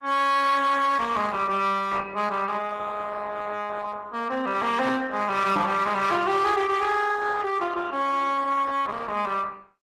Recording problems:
codec artefacts; Opus, log-spectral distance 4 dB, nothing above 13.1 kHz
distorted audio; hard clipping, uneven, signal-to-distortion ratio 11 dB
microphone bump; at 5.5 s; peak -1 dB vs average level

